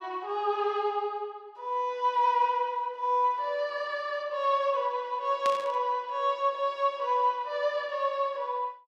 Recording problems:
burst of static; at 5.5 s; peak -4 dB vs average level

